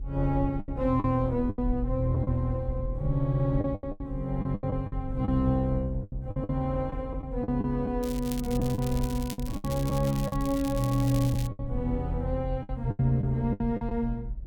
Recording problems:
rumble; below 56 Hz, strongest tone 44 Hz, SNR 9 dB
packet loss; 11% of the sound replaced, filled with the last packet
crackling; from 8 to 10 s and from 10 to 11 s; loose cable, SNR 14 dB

